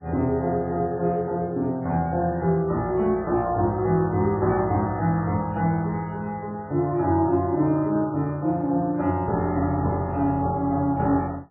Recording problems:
codec artefacts; MP3, log-spectral distance 2 dB

